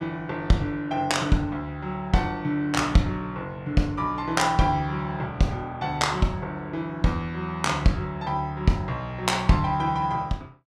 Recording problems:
none

